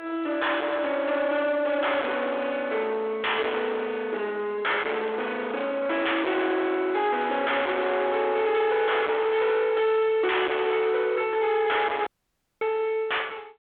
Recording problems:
phone line; 300 Hz to 3.5 kHz, G.726
distorted audio; hard clipping, signal-to-distortion ratio 7 dB
audio cutting out; at 12 s for 0.5 s

